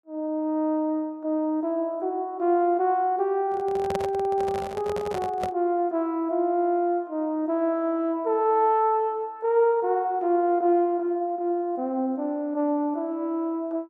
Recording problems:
handling noise; from 3.5 to 5.5 s; peak -2 dB vs average level

